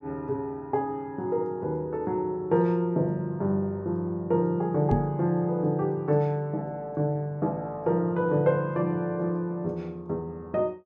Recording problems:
microphone bump; at 5 s; peak +5 dB vs average level

